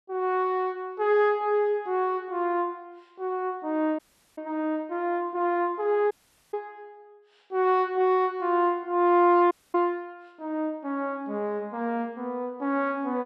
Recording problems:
dropout; at 4 s, at 6 s and at 9.5 s

